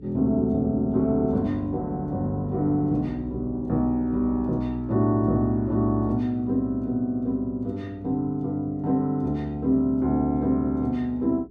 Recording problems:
hum; 60 Hz, harmonics up to 420 Hz, SNR 23 dB

